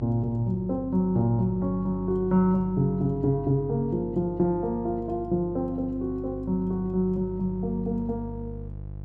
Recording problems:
hum; 50 Hz, harmonics up to 500 Hz, SNR 13 dB

